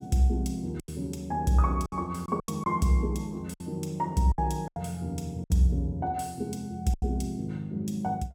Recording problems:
packet loss; 7% of the sound replaced, filled with silence

